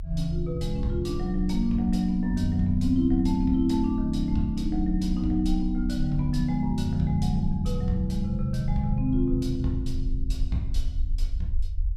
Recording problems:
rumble; below 54 Hz, strongest tone 30 Hz, SNR 8 dB

